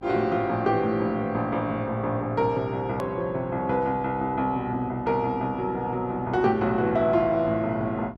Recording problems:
electrical hum; 50 Hz, harmonics up to 1.1 kHz, SNR 21 dB
click at an edit; at 3 s

